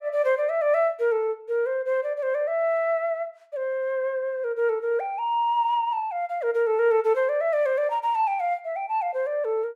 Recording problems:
none

